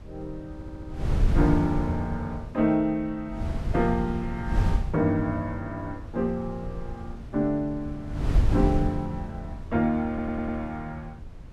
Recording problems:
wind noise; below 100 Hz, SNR 4 dB
audio stuttering; at 0.5 s and at 10 s

